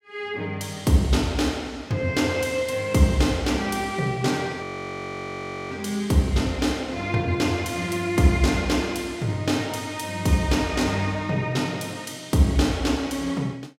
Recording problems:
frozen audio; at 4.5 s for 1 s

